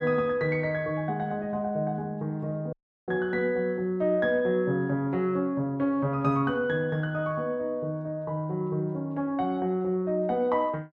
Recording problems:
dropout; at 2.5 s

